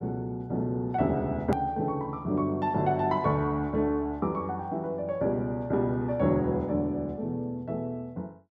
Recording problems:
edit click; at 1.5 s

